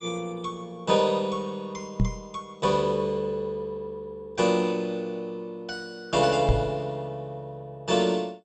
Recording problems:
lossy compression; MP2, log-spectral distance 2 dB, nothing above 7.6 kHz
microphone bump; at 2 s and at 6.5 s; peak +7 dB vs average level

